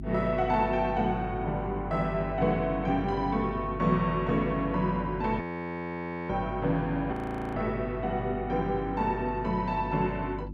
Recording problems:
electrical hum; 50 Hz, harmonics up to 350 Hz, SNR 10 dB
frozen audio; at 5.5 s for 1 s and at 7 s

